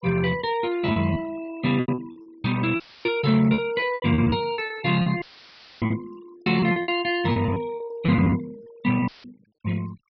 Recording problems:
treble missing; nothing above 5.5 kHz
noise reduction artefacts; signal-to-artefact ratio 20 dB
lost packets; 15% of the sound replaced, filled with repeated pitch periods
dropout; at 3 s, at 5 s for 0.5 s and at 9 s; filled with static

